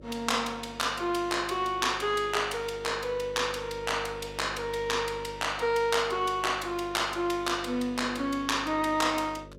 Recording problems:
mains hum; 50 Hz, harmonics up to 600 Hz, SNR 18 dB

